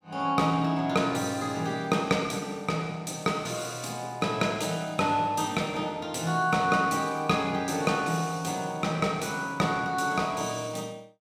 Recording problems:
none

